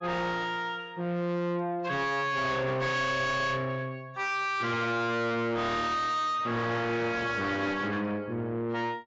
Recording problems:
codec artefacts; AAC, log-spectral distance 2 dB, nothing above 7.3 kHz
distortion; soft clipping, signal-to-distortion ratio 6 dB

